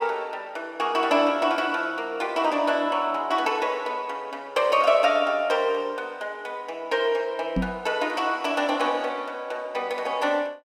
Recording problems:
microphone bump; at 7.5 s; peak +3 dB vs average level

